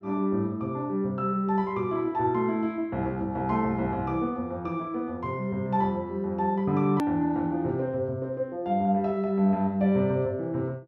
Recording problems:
hard cut with a click; at 7 s

